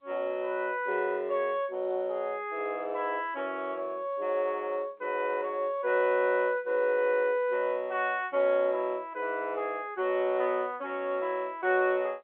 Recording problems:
telephone audio; 320 Hz to 3.3 kHz, G.711

